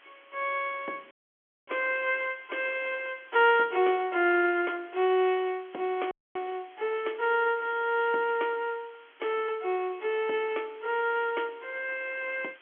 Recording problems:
phone line; 260 Hz to 3.4 kHz, G.711
hiss; SNR 27 dB
audio cutting out; at 1 s for 0.5 s and at 6 s

